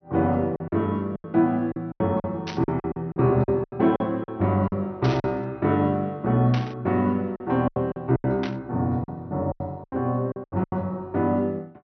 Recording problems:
treble missing; nothing above 6.1 kHz
lost packets; 12% of the sound replaced, filled with silence
static burst; 4 times, first at 2.5 s; peak -5 dB vs average level

